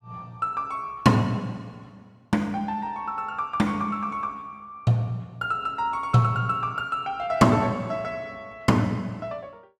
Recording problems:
none

